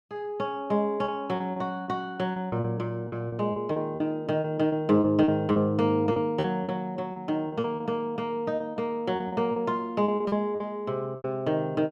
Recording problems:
lost packets; 12% of the sound replaced, filled with repeated pitch periods

